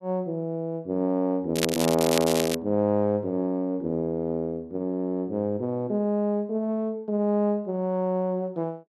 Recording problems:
crackle; from 1.5 to 2.5 s; loose cable, SNR 5 dB

